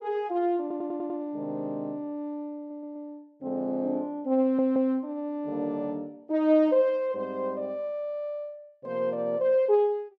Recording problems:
stutter; at 0.5 s, at 2.5 s and at 4.5 s

